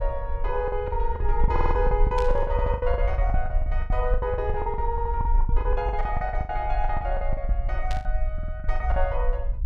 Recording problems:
low-frequency rumble; below 52 Hz, SNR -1 dB
lost packets; 20% of the sound replaced, filled with the last packet
audio stuttering; 4 times, first at 1.5 s
burst of static; at 2 s and at 8 s; peak -4 dB vs average level

